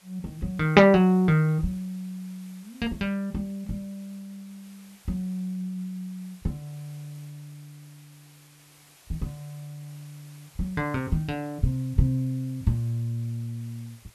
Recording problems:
hiss; slope -1 dB per octave, SNR 27 dB

